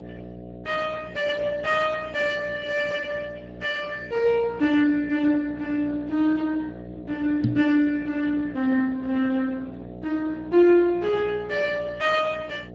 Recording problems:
lossy codec; Speex, log-spectral distance 3 dB, nothing above 7.6 kHz
hum; 60 Hz, harmonics up to 720 Hz, SNR 16 dB
knock on the microphone; at 7.5 s; peak +4 dB vs average level

